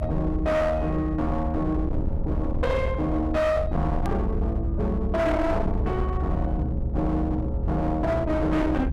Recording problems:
distorted audio; hard clipping, signal-to-distortion ratio 8 dB
low-frequency rumble; below 84 Hz, SNR 3 dB
click at an edit; at 4 s

